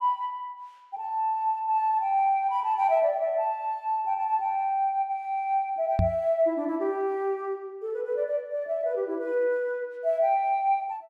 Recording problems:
microphone thump; at 6 s; peak +5 dB vs average level

